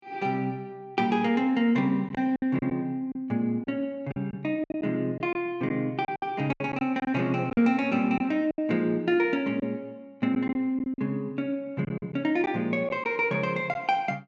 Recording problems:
treble missing; nothing above 8 kHz
packet loss; 7% of the sound replaced, filled with silence

